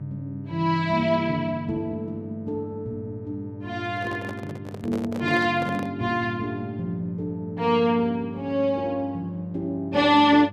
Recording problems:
hum; 50 Hz, harmonics up to 900 Hz, SNR 15 dB
microphone handling noise; from 4 to 6 s; peak -6 dB vs average level

